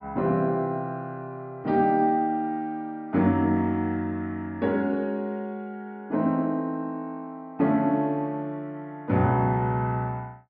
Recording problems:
treble cut off; nothing above 5.5 kHz

